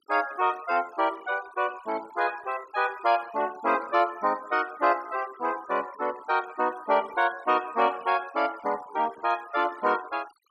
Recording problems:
denoising artefacts; signal-to-artefact ratio 21 dB

